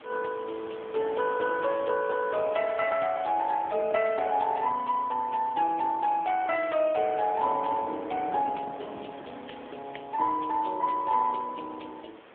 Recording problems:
phone line; 340 Hz to 3.5 kHz, AMR-NB
background hiss; SNR 22 dB
wind on the microphone; below 830 Hz, SNR 20 dB

